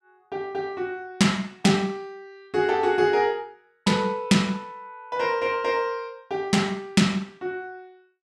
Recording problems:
none

